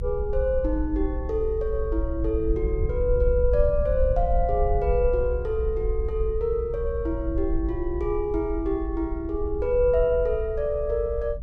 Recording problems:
low-frequency rumble; below 60 Hz, SNR 4 dB

